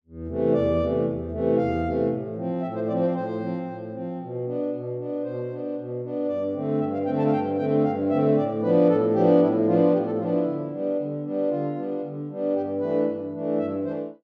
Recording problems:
none

